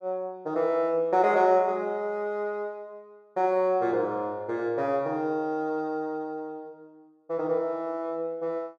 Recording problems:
none

